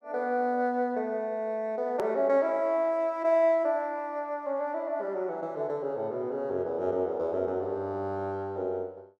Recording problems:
hard cut with a click; at 2 s

